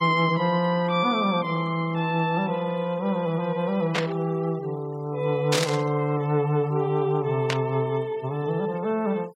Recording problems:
denoising artefacts; signal-to-artefact ratio 24 dB
burst of static; at 4 s, at 5.5 s and at 7.5 s; peak +4 dB vs average level

